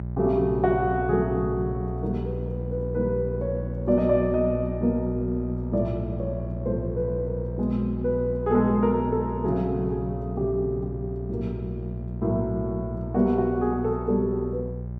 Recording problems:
hum; 60 Hz, harmonics up to 600 Hz, SNR 6 dB

